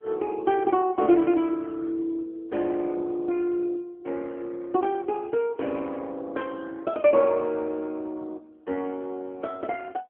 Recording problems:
telephone audio; 240 Hz to 3.3 kHz, AMR-NB

